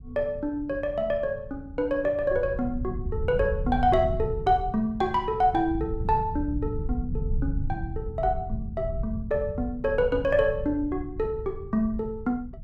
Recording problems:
low-frequency rumble; below 110 Hz, SNR 8 dB

